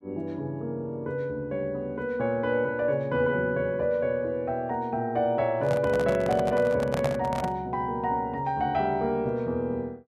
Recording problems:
handling noise; from 5.5 to 7.5 s; peak +1 dB vs average level

